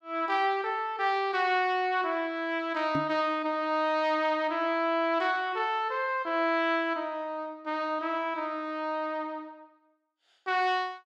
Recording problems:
microphone bump; at 3 s; peak +1 dB vs average level

